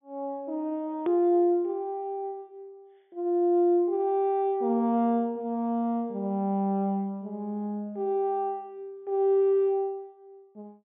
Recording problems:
treble cut off; nothing above 3.5 kHz
edit click; at 1 s

